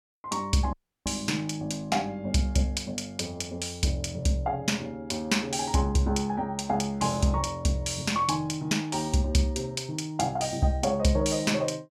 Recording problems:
audio cutting out; at 0.5 s

